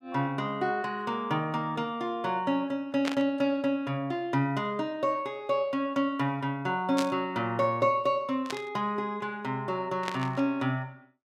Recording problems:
static burst; 4 times, first at 3 s; peak +1 dB vs average level

